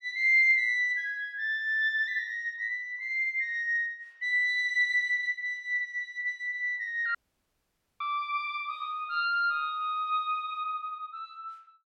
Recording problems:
audio cutting out; at 7 s for 1 s

